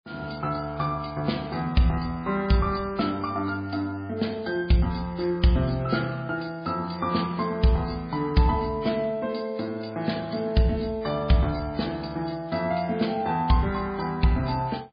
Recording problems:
codec artefacts; MP3, log-spectral distance 5 dB, nothing above 4.8 kHz

